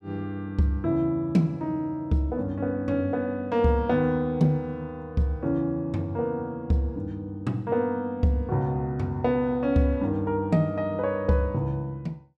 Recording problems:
none

